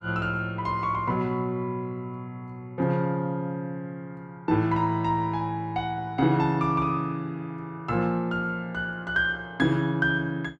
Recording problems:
none

